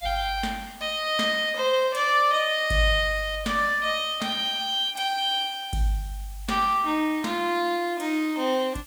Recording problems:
background hiss; slope +3 dB per octave, SNR 23 dB

